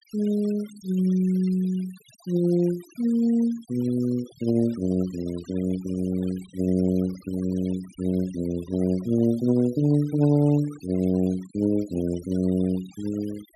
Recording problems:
denoising artefacts; signal-to-artefact ratio 22 dB

